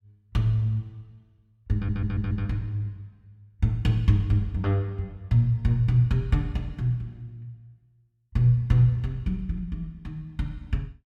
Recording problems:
stutter; at 2 s

